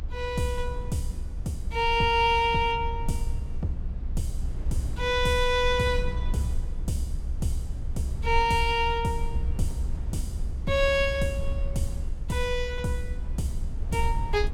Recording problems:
rumble; below 66 Hz, strongest tone 24 Hz, SNR 5 dB

